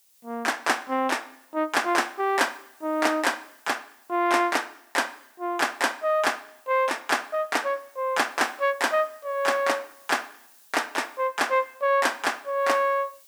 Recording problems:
hiss; slope +2 dB per octave, SNR 29 dB

